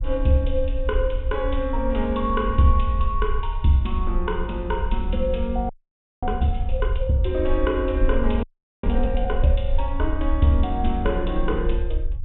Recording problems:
treble missing; nothing above 3.9 kHz
low-frequency rumble; below 56 Hz, SNR 3 dB
frozen audio; at 5.5 s for 0.5 s and at 8.5 s

